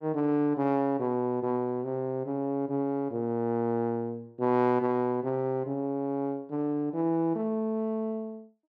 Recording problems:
none

